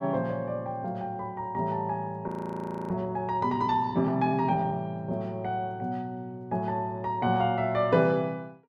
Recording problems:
frozen audio; at 2.5 s for 0.5 s

